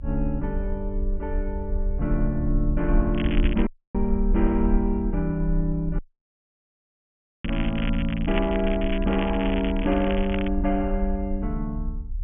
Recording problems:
low-pass filter; nothing above 3.3 kHz
rumble; below 54 Hz, strongest tone 32 Hz, SNR 4 dB
crackling; at 3 s and from 7.5 to 10 s; loose cable, SNR 10 dB
audio cutting out; at 3.5 s and at 6 s for 1.5 s

